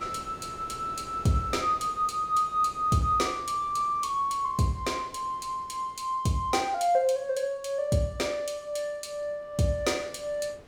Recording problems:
wind on the microphone; below 1.1 kHz, SNR 21 dB

